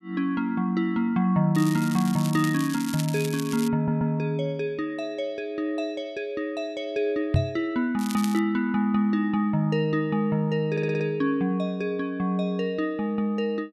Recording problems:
crackle; from 1.5 to 3.5 s and at 8 s; loose cable, SNR 13 dB
audio stuttering; at 4 s and at 11 s
microphone thump; at 7.5 s; peak +6 dB vs average level

